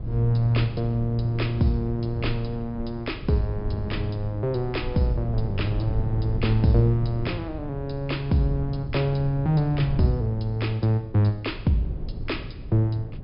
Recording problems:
low-pass filter; nothing above 5.5 kHz
rumble; below 120 Hz, SNR 9 dB

